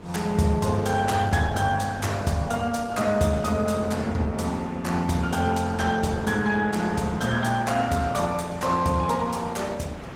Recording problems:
lossy compression; Opus, log-spectral distance 4 dB, nothing above 17 kHz
hum; 50 Hz, harmonics up to 500 Hz, SNR 24 dB
wind noise; below 900 Hz, SNR 21 dB

